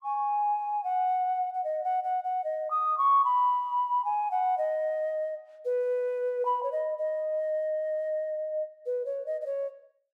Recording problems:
none

